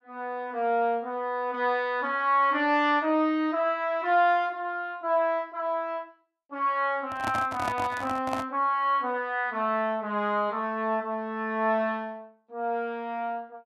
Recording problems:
microphone handling noise; from 7 to 8.5 s; peak -1 dB vs average level

